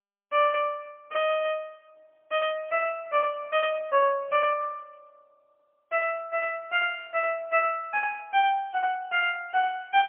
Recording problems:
telephone audio; 470 Hz to 3.3 kHz, AMR-NB, then MP3

